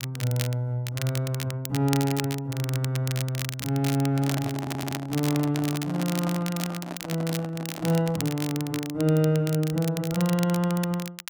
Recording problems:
crackle; vinyl, SNR 10 dB
handling noise; from 4 to 8.5 s; peak -3 dB vs average level
audio stuttering; at 4.5 s

